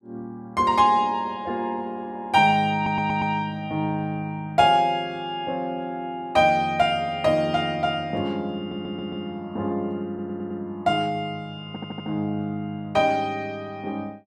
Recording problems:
audio stuttering; 4 times, first at 3 s

